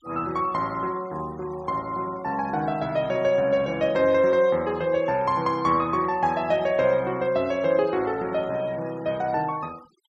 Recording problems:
noise reduction artefacts; signal-to-artefact ratio 24 dB

